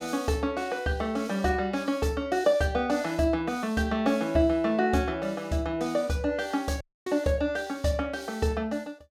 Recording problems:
audio cutting out; at 7 s

